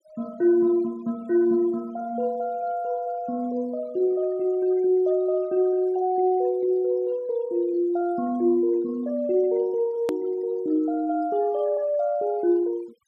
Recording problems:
noise reduction artefacts; signal-to-artefact ratio 27 dB
hard cut with a click; at 10 s

